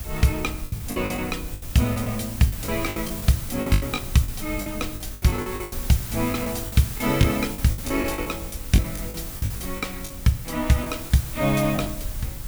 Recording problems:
hiss; slope -2 dB per octave, SNR 10 dB
rumble; below 88 Hz, SNR 13 dB
lost packets; 14% of the sound replaced, filled with the last packet

